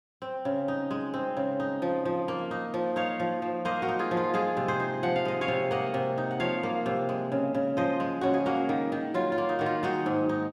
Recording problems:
none

